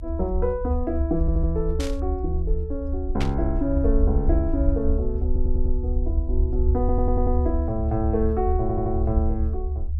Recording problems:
rumble; below 72 Hz, SNR -1 dB
audio stuttering; 4 times, first at 1 s
static burst; at 2 s and at 3 s; peak -2 dB vs average level

